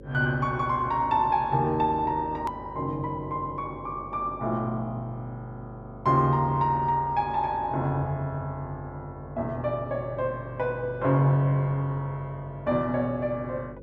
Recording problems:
hum; 50 Hz, harmonics up to 550 Hz, SNR 17 dB
edit click; at 2.5 s

